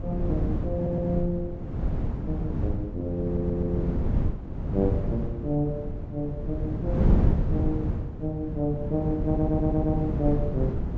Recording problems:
treble missing; nothing above 8 kHz
wind on the microphone; below 190 Hz, SNR 0 dB
stutter; at 1 s, at 3 s and at 9.5 s

